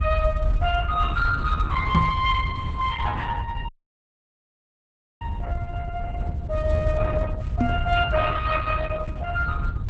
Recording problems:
lossy compression; Opus, log-spectral distance 2 dB
low-frequency rumble; below 84 Hz, SNR 1 dB
microphone bump; at 2 s and at 7.5 s; peak +6 dB vs average level
dropout; at 3.5 s for 1.5 s

